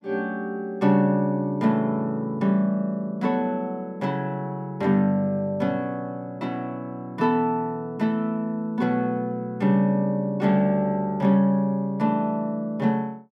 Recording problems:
none

